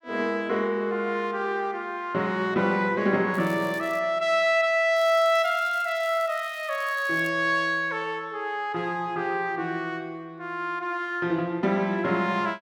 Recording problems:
crackling; at 3.5 s and from 5 to 7.5 s; loose cable, SNR 23 dB

